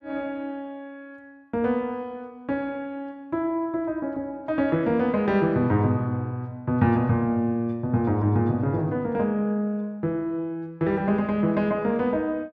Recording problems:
none

